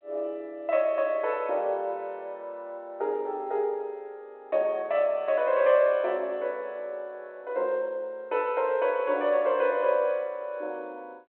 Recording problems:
telephone audio; 320 Hz to 3.4 kHz, G.726

